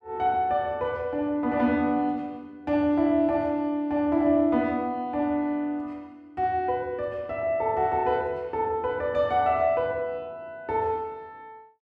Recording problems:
none

